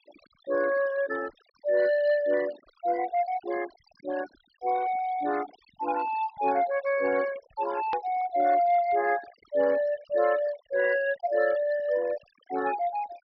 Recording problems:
treble cut off; nothing above 5.5 kHz
denoising artefacts; signal-to-artefact ratio 17 dB
click at an edit; at 8 s

